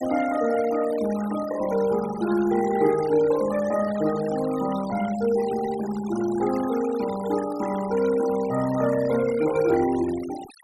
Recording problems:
noise reduction artefacts; signal-to-artefact ratio 16 dB

